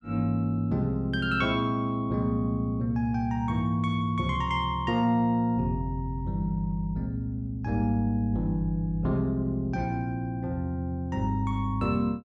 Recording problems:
none

